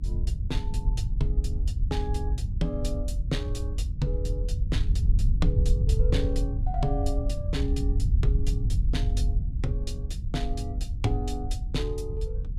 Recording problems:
low-frequency rumble; below 82 Hz, SNR -6 dB

